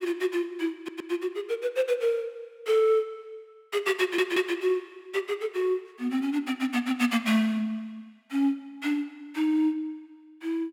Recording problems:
audio stuttering; at 1 s and at 4 s

